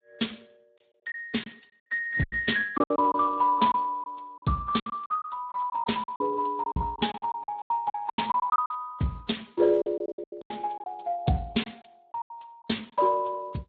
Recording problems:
lossy codec; AAC, then Speex, log-spectral distance 5 dB, nothing above 3.8 kHz
packet loss; 14% of the sound replaced, filled with silence

